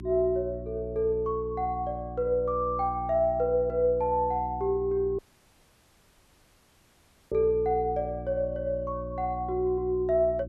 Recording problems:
hum; 60 Hz, harmonics up to 360 Hz, SNR 12 dB
dropout; at 5 s for 2 s

